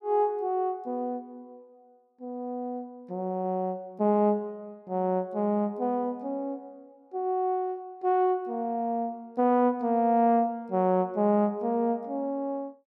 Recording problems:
none

